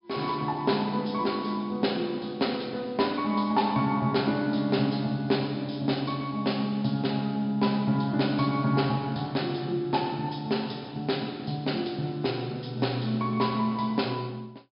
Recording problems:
treble cut off; nothing above 5.5 kHz

